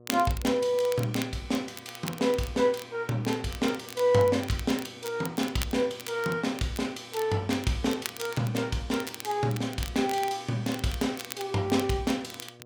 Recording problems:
mains hum; 60 Hz, harmonics up to 1.2 kHz, SNR 23 dB
crackling; vinyl, SNR 14 dB

